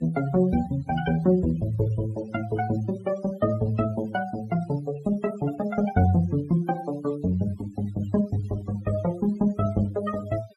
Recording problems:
denoising artefacts; signal-to-artefact ratio 20 dB

